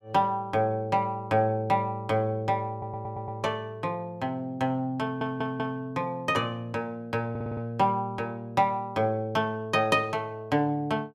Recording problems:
audio stuttering; at 2.5 s, at 5 s and at 7.5 s

